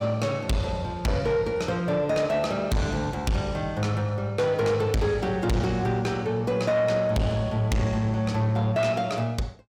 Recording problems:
distorted audio; soft clipping, signal-to-distortion ratio 8 dB

